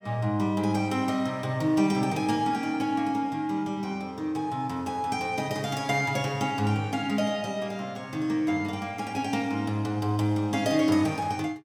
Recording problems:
none

